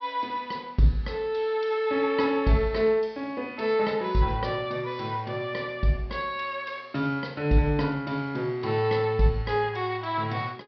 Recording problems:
treble cut off; nothing above 5.5 kHz

